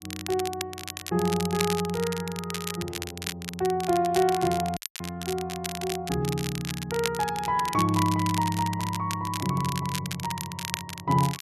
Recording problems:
crackle; vinyl, SNR 8 dB
audio cutting out; at 5 s

